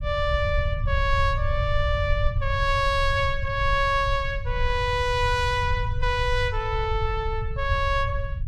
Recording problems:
low-frequency rumble; below 92 Hz, SNR 4 dB

